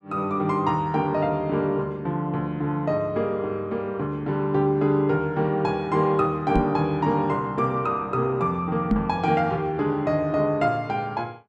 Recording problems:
microphone bump; at 6.5 s and at 9 s; peak +7 dB vs average level

